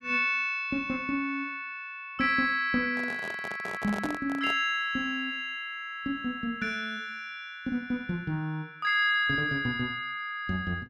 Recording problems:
handling noise; from 3 to 4.5 s; peak -4 dB vs average level

